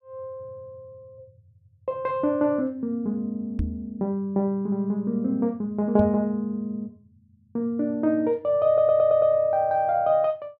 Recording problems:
knock on the microphone; at 3.5 s and at 6 s; peak 0 dB vs average level
audio stuttering; at 8.5 s

